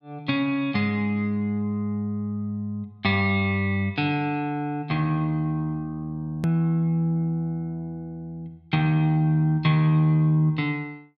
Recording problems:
click at an edit; at 6.5 s

